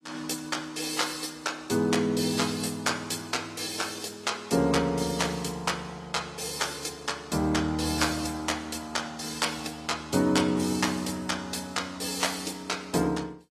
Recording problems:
codec artefacts; AAC, log-spectral distance 5 dB, nothing above 13.5 kHz

